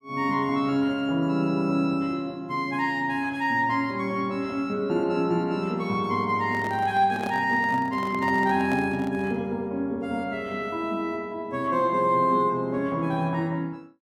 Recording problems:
handling noise; from 6.5 to 9.5 s; peak -4 dB vs average level

